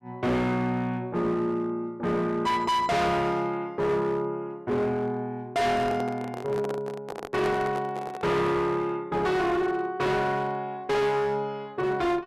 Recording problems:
distorted audio; hard clipping, signal-to-distortion ratio 7 dB
microphone handling noise; from 5.5 to 8.5 s; peak -5 dB vs average level

